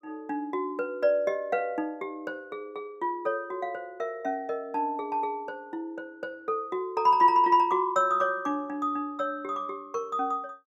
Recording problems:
none

